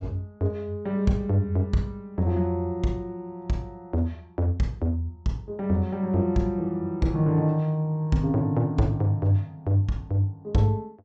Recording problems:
treble cut off; nothing above 8 kHz

